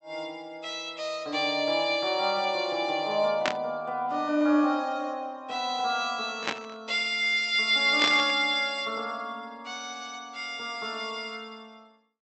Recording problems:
treble cut off; nothing above 7.8 kHz
static burst; at 3.5 s, at 6.5 s and at 8 s; peak +3 dB vs average level

